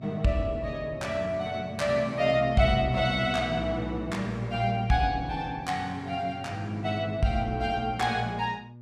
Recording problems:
hum; 60 Hz, harmonics up to 840 Hz, SNR 19 dB

